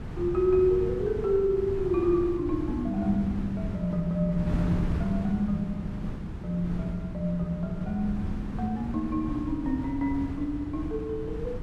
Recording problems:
wind on the microphone; below 220 Hz, SNR 7 dB

